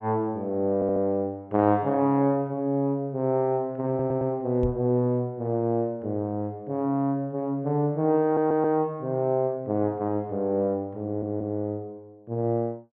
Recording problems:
audio stuttering; 4 times, first at 1 s
microphone thump; at 4.5 s; peak 0 dB vs average level

